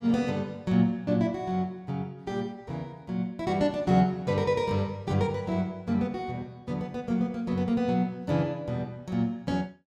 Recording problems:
none

